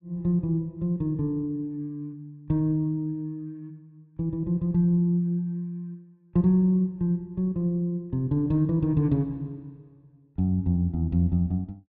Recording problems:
none

